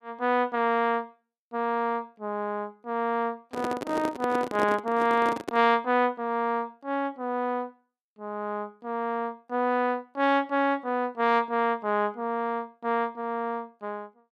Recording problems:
microphone handling noise; from 3.5 to 5.5 s; peak +1 dB vs average level

